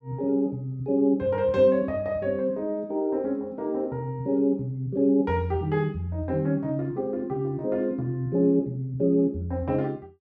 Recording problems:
none

